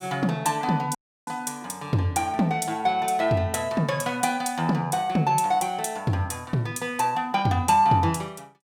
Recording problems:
audio cutting out; at 1 s

